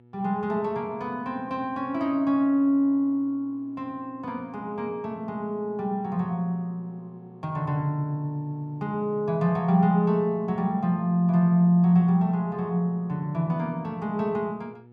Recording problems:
hum; 60 Hz, harmonics up to 960 Hz, SNR 26 dB

